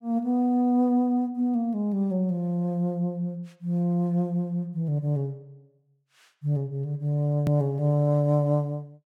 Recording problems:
click at an edit; at 7.5 s

